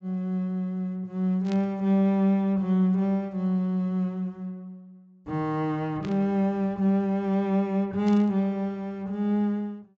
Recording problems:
treble cut off; nothing above 8 kHz
static burst; at 1.5 s, at 6 s and at 8 s; peak -12 dB vs average level

